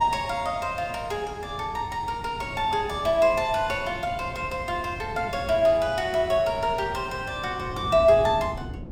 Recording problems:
wind noise; below 260 Hz, SNR 14 dB

